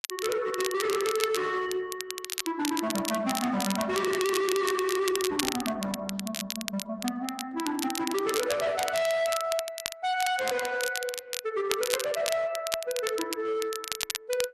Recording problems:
lossy codec; MP3, then Opus, log-spectral distance 2 dB, nothing above 11 kHz
distortion; hard clipping, signal-to-distortion ratio 8 dB
crackle; vinyl, SNR 5 dB

